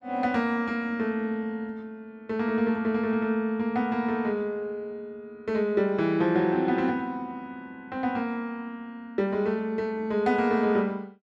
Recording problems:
none

